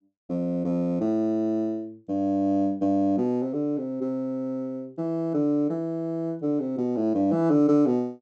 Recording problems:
treble missing; nothing above 7.9 kHz

